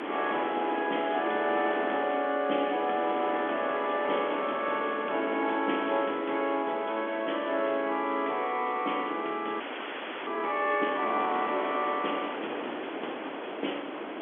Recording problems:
phone line; 240 Hz to 3.4 kHz, G.711
background hiss; SNR 26 dB
wind noise; below 1.3 kHz, SNR 7 dB
audio freezing; at 9.5 s for 0.5 s

